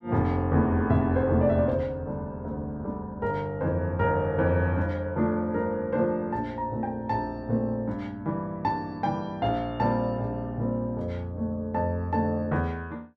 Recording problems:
none

